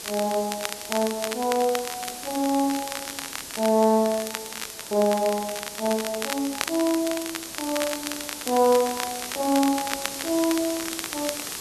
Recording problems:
background hiss; SNR 9 dB
crackling; vinyl, SNR 9 dB

